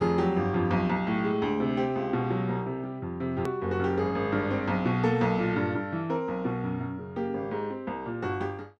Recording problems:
edit click; at 3.5 s

